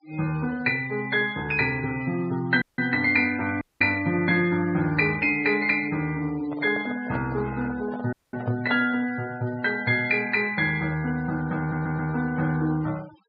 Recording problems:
low-pass filter; nothing above 4.9 kHz
denoising artefacts; signal-to-artefact ratio 21 dB
dropout; at 2.5 s, at 3.5 s and at 8 s
handling noise; from 6.5 to 9 s; peak -6 dB vs average level
audio stuttering; at 12 s

